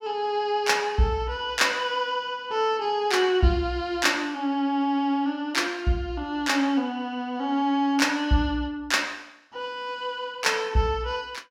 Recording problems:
none

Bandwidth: 16 kHz